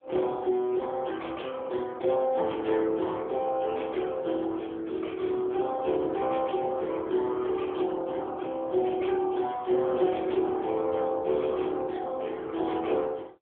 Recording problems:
telephone audio; 280 Hz to 3.3 kHz, AMR-NB

